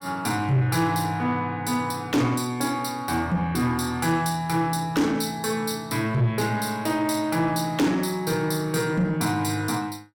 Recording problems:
distortion; soft clipping, signal-to-distortion ratio 12 dB

